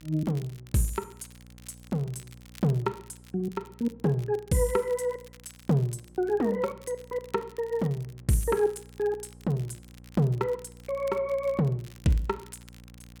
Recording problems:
hum; 60 Hz, harmonics up to 780 Hz, SNR 23 dB
crackle; vinyl, SNR 25 dB

